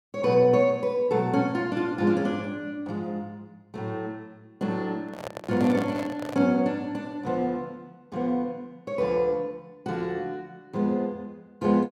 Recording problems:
microphone handling noise; from 5 to 6.5 s; peak -5 dB vs average level

